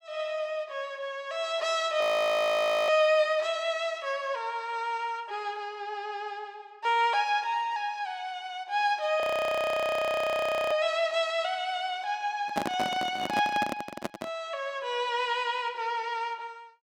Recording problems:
audio freezing; at 2 s for 1 s and at 9 s for 1.5 s
microphone handling noise; from 12 to 14 s; peak +2 dB vs average level

